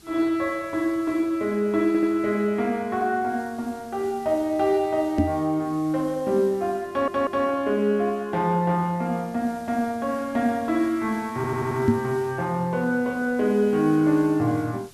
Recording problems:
background hiss; SNR 25 dB
stutter; at 2 s, at 7 s and at 11 s
microphone thump; at 5 s and at 12 s; peak +7 dB vs average level

